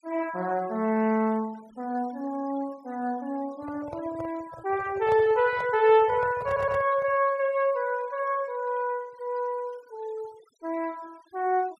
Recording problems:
noise reduction artefacts; signal-to-artefact ratio 24 dB
handling noise; from 3.5 to 7.5 s; peak -6 dB vs average level
stutter; at 6.5 s

